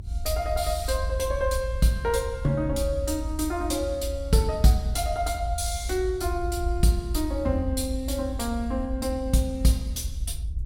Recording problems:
rumble; below 74 Hz, strongest tone 52 Hz, SNR 5 dB

